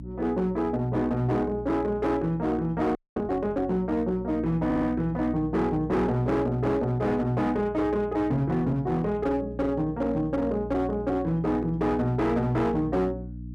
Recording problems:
distortion; hard clipping, signal-to-distortion ratio 12 dB
hum; 60 Hz, harmonics up to 300 Hz, SNR 13 dB
frozen audio; at 3 s
stutter; at 4.5 s

